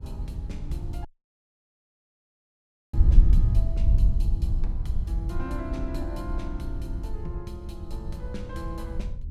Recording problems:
wind noise; below 70 Hz, SNR -11 dB
audio cutting out; at 1 s for 2 s

